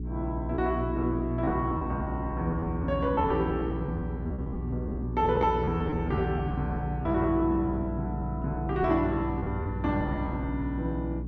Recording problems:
hum; 60 Hz, harmonics up to 420 Hz, SNR 5 dB
lost packets; 11% of the sound replaced, filled with repeated pitch periods

